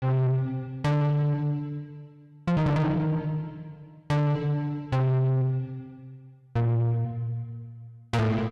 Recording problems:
distortion; soft clipping, signal-to-distortion ratio 7 dB

